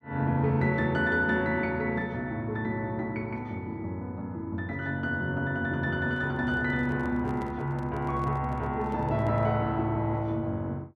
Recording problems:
handling noise; from 6 to 9.5 s; peak -11 dB vs average level

